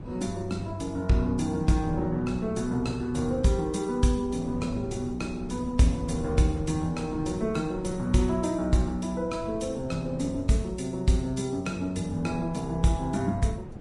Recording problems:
codec artefacts; Vorbis, log-spectral distance 2 dB, nothing above 10.1 kHz
wind noise; below 240 Hz, SNR 13 dB

